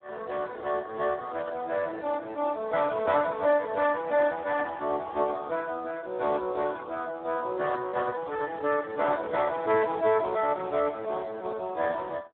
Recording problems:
telephone audio; 300 Hz to 2 kHz, Speex

